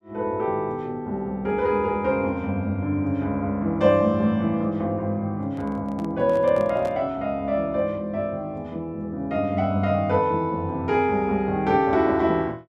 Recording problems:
microphone handling noise; from 5.5 to 7 s; peak -10 dB vs average level

